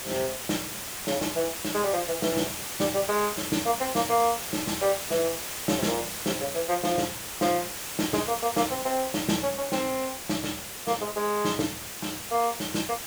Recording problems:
hiss; slope -1 dB per octave, SNR 5 dB

